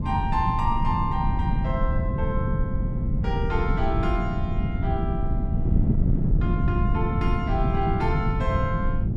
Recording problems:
wind noise; below 160 Hz, SNR -4 dB

